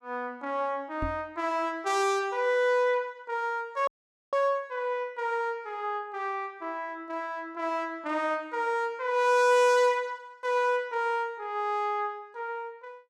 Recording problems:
microphone thump; at 1 s; peak -2 dB vs average level
audio cutting out; at 4 s

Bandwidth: 14.5 kHz